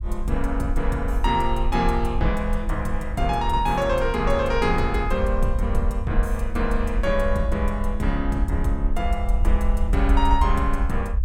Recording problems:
rumble; below 56 Hz, SNR 2 dB

